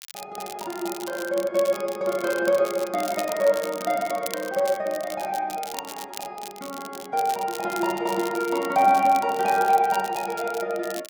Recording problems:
crackle; vinyl, SNR 15 dB

